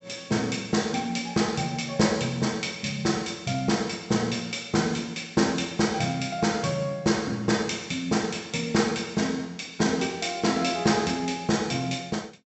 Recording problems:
low-pass filter; nothing above 7.8 kHz

